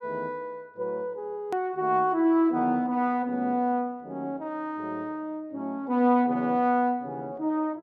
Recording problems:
edit click; at 1.5 s

